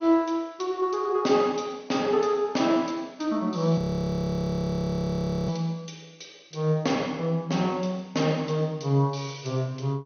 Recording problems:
lossy codec; MP2, log-spectral distance 5 dB, nothing above 6.3 kHz
audio freezing; at 4 s for 1.5 s

